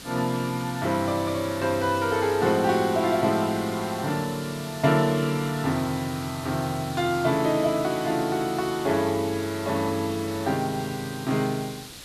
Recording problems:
background hiss; SNR 14 dB

